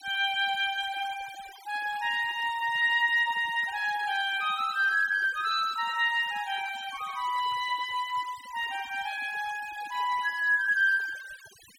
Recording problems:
noise reduction artefacts; signal-to-artefact ratio 20 dB

